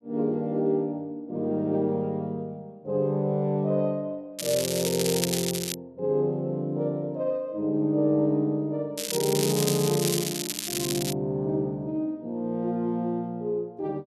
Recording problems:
crackle; from 4.5 to 5.5 s and from 9 to 11 s; loose cable, SNR 2 dB

